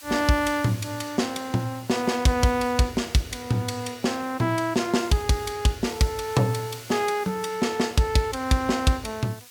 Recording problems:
hiss; slope +2 dB per octave, SNR 20 dB

